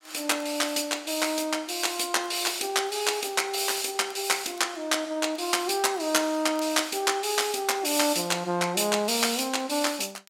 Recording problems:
crackle; vinyl, SNR 29 dB

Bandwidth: 16 kHz